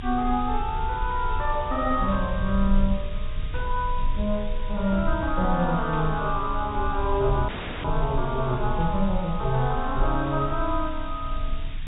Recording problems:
low-pass filter; nothing above 4 kHz
background hiss; SNR 18 dB
low-frequency rumble; below 52 Hz, strongest tone 22 Hz, SNR 6 dB
burst of static; 4 times, first at 2 s; peak -13 dB vs average level
dropout; at 7.5 s

